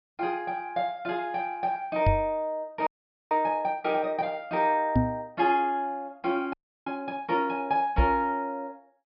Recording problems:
low-pass filter; nothing above 5.5 kHz
microphone thump; at 2 s, at 5 s and at 8 s; peak +8 dB vs average level
frozen audio; at 3 s and at 6.5 s

